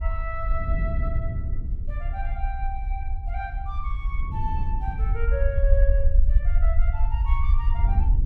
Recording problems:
rumble; below 58 Hz, SNR -8 dB
wind noise; below 110 Hz, SNR 0 dB

